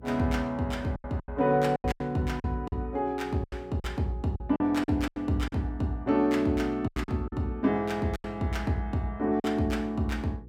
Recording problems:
hum; 60 Hz, harmonics up to 480 Hz, SNR 21 dB
lost packets; 10% of the sound replaced, filled with silence

